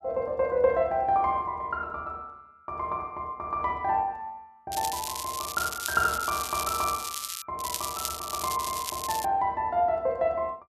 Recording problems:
crackle; from 4.5 to 7.5 s and from 7.5 to 9.5 s; loose cable, SNR 5 dB

